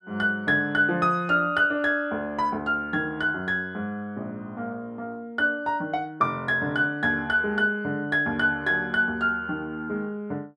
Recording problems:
none

